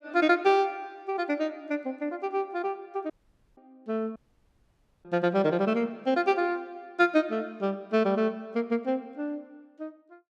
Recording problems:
dropout; at 3 s and at 4 s for 1 s

